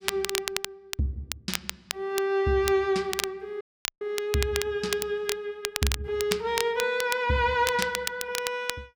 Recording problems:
crackling; vinyl, SNR 5 dB
audio cutting out; at 3.5 s

